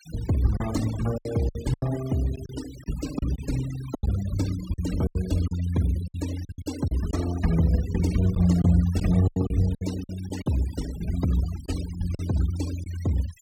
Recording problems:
denoising artefacts; signal-to-artefact ratio 16 dB
packet loss; 9% of the sound replaced, filled with silence

